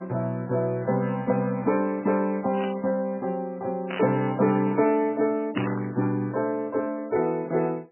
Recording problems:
codec artefacts; MP3, log-spectral distance 3 dB, nothing above 2.4 kHz
static burst; at 2.5 s, at 4 s and at 5.5 s; peak -4 dB vs average level

